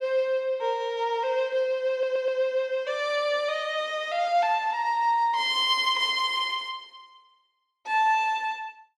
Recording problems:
stutter; at 2 s

